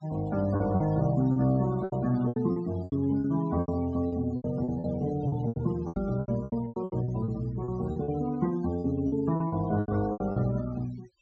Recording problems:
treble cut off; nothing above 8 kHz
noise reduction artefacts; signal-to-artefact ratio 18 dB
packet loss; 16% of the sound replaced, filled with repeated pitch periods
microphone bump; at 6 s; peak -4 dB vs average level

